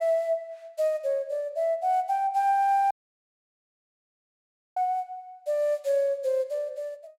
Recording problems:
dropout; at 3 s for 2 s

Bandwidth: 16 kHz